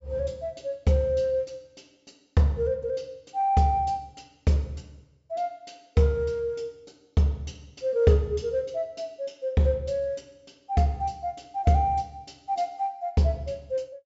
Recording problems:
treble cut off; nothing above 8 kHz

